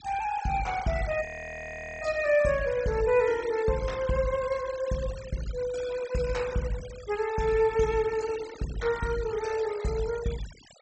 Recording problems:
treble cut off; nothing above 8 kHz
denoising artefacts; signal-to-artefact ratio 16 dB
frozen audio; at 1.5 s for 1 s

